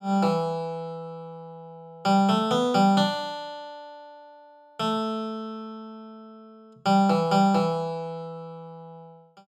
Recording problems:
none

